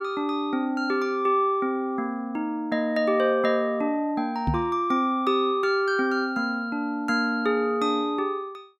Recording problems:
microphone bump; at 4.5 s; peak +2 dB vs average level

